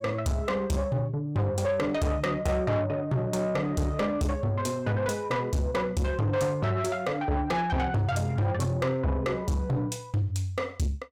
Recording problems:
distortion; soft clipping, signal-to-distortion ratio 7 dB

